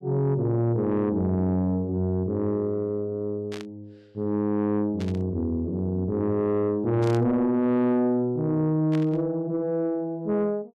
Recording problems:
distorted audio; soft clipping, signal-to-distortion ratio 12 dB
burst of static; 4 times, first at 3.5 s; peak -10 dB vs average level

